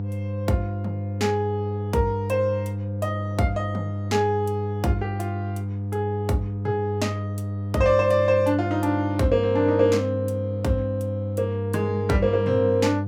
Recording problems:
electrical hum; 50 Hz, harmonics up to 700 Hz, SNR 5 dB

